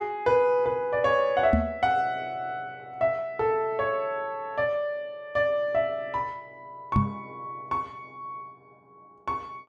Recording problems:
knock on the microphone; at 1.5 s and at 7 s; peak +7 dB vs average level

